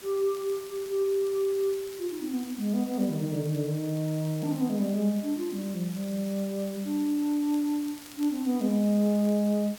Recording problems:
background hiss; slope -1 dB per octave, SNR 17 dB
crackling; vinyl, SNR 27 dB

